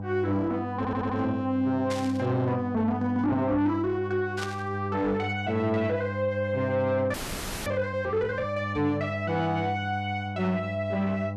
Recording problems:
distortion; soft clipping, signal-to-distortion ratio 10 dB
hum; 50 Hz, harmonics up to 1 kHz, SNR 8 dB
stutter; at 1 s
burst of static; at 2 s and at 4.5 s; peak -4 dB vs average level
audio freezing; at 7 s for 0.5 s

